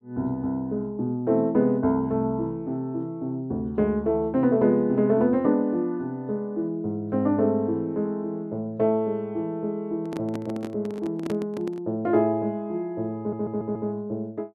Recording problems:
handling noise; from 10 to 12 s; peak -4 dB vs average level
audio stuttering; at 13 s

